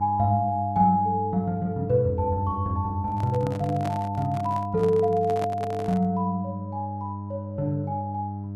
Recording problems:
mains hum; 50 Hz, harmonics up to 700 Hz, SNR 8 dB
handling noise; from 3 to 6 s; peak -5 dB vs average level

